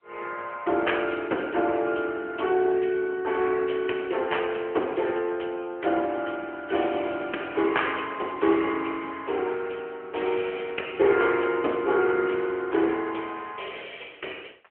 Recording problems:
telephone audio; 300 Hz to 3.1 kHz, AMR-NB

